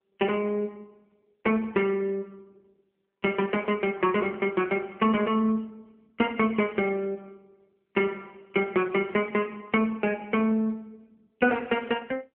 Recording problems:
phone line; 170 Hz to 3.5 kHz, AMR-NB

